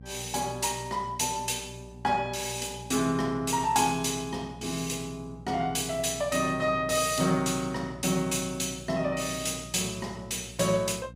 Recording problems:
hum; 60 Hz, harmonics up to 540 Hz, SNR 18 dB

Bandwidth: 15.5 kHz